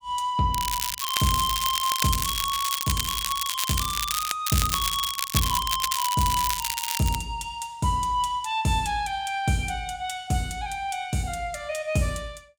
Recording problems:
crackle; from 0.5 to 4.5 s and from 4.5 to 7 s; loose cable, SNR 1 dB

